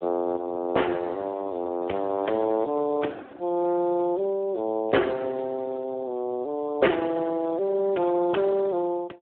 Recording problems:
telephone audio; 280 Hz to 3.3 kHz, Speex

